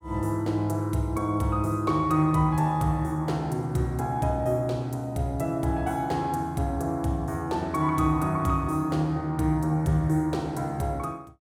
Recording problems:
none

